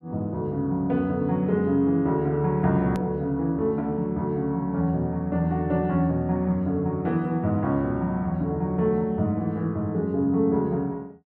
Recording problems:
hard cut with a click; at 3 s

